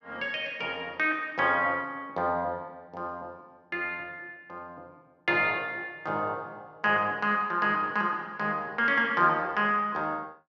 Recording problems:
none

